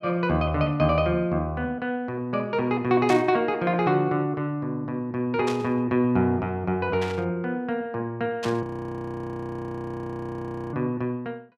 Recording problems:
static burst; 4 times, first at 3 s; peak -4 dB vs average level
audio freezing; at 8.5 s for 2 s

